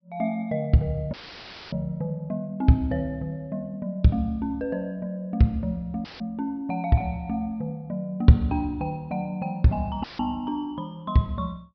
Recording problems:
low-pass filter; nothing above 5.5 kHz
dropout; at 1 s for 0.5 s, at 6 s and at 10 s; filled with static

